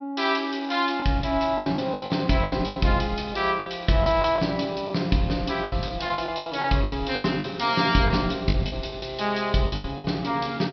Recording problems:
treble missing; nothing above 5.5 kHz
packet loss; 13% of the sound replaced, filled with the last packet

